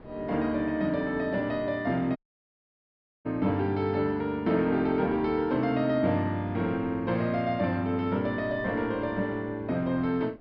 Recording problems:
treble cut off; nothing above 5.5 kHz
wind noise; below 520 Hz, SNR 22 dB
dropout; at 2 s for 1 s

